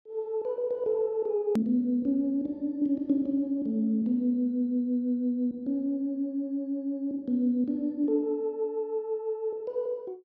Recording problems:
edit click; at 1.5 s

